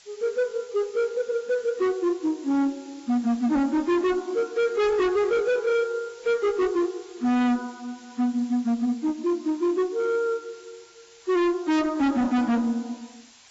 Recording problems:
lossy compression; AAC, log-spectral distance 7 dB, nothing above 7.6 kHz
distorted audio; hard clipping, signal-to-distortion ratio 7 dB
hiss; SNR 25 dB

